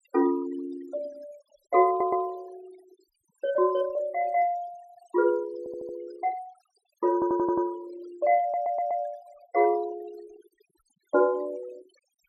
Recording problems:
denoising artefacts; signal-to-artefact ratio 21 dB
stutter; 4 times, first at 2 s

